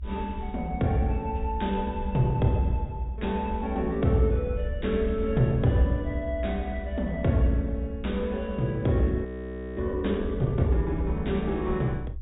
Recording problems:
treble cut off; nothing above 4 kHz
low-frequency rumble; below 70 Hz, SNR 8 dB
audio freezing; at 9.5 s for 0.5 s

